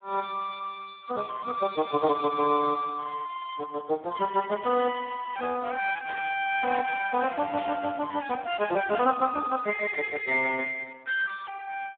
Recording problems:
phone line; 220 Hz to 2.1 kHz, Speex
burst of static; at 6 s and at 7.5 s; peak -8 dB vs average level

